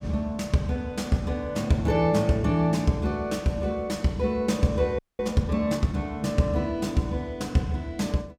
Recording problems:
audio freezing; at 5 s

